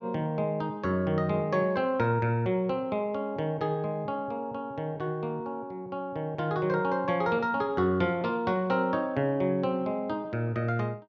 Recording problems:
none

